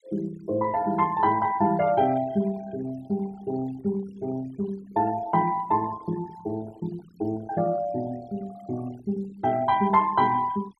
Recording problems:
noise reduction artefacts; signal-to-artefact ratio 21 dB

